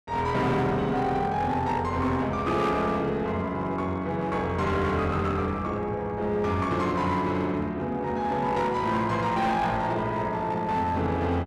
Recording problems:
distortion; hard clipping, uneven, signal-to-distortion ratio 11 dB

